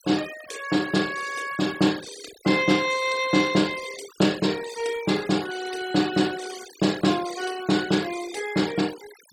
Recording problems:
denoising artefacts; signal-to-artefact ratio 15 dB

